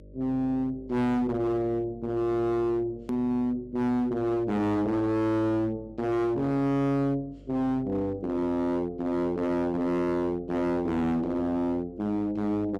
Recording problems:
distorted audio; hard clipping, signal-to-distortion ratio 7 dB
hum; 50 Hz, harmonics up to 600 Hz, SNR 23 dB
hard cut with a click; at 3 s

